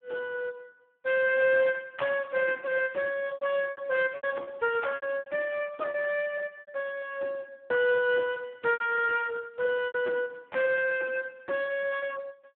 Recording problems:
telephone audio; 260 Hz to 3.3 kHz, Speex
packet loss; 7% of the sound replaced, filled with repeated pitch periods

